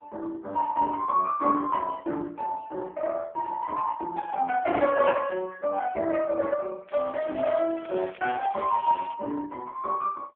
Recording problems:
phone line; 260 Hz to 3.4 kHz, AMR-NB
crackle; from 7 to 9 s; loose cable, SNR 21 dB

